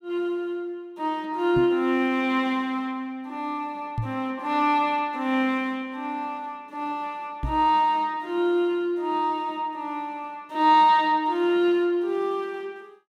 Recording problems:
microphone bump; at 1.5 s, at 4 s and at 7.5 s; peak 0 dB vs average level

